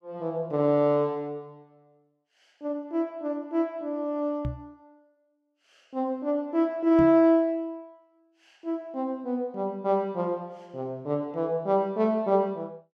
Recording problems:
knock on the microphone; at 4.5 s and at 7 s; peak -1 dB vs average level

